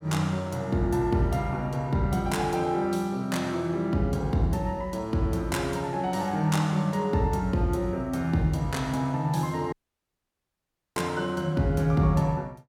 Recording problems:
audio cutting out; at 9.5 s for 1 s

